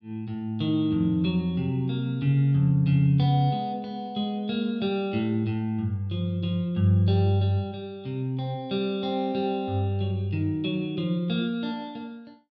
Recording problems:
none

